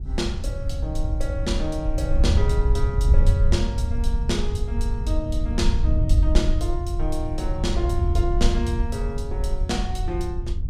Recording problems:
wind noise; below 76 Hz, SNR -5 dB

